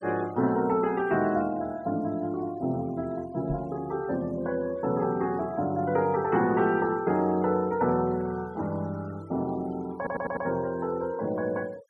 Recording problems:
denoising artefacts; signal-to-artefact ratio 25 dB
knock on the microphone; at 3.5 s; peak -2 dB vs average level
stutter; at 10 s

